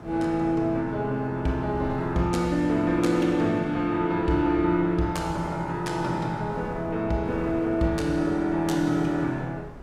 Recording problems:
wind on the microphone; below 570 Hz, SNR 16 dB

